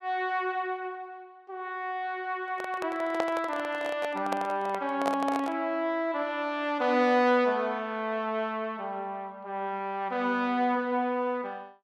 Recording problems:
microphone handling noise; from 2.5 to 5.5 s; peak +3 dB vs average level

